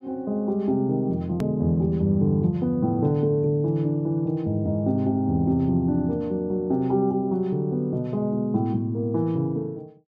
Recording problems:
edit click; at 1.5 s

